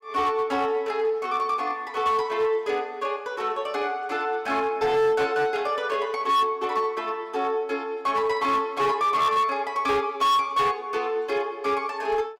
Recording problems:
distortion; hard clipping, signal-to-distortion ratio 12 dB

